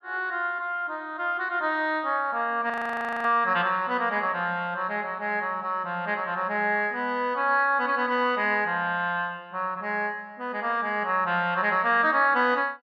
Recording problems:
audio freezing; at 2.5 s for 0.5 s

